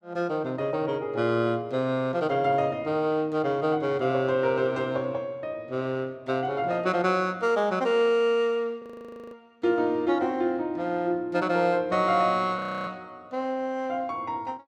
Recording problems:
frozen audio; at 9 s for 0.5 s and at 13 s

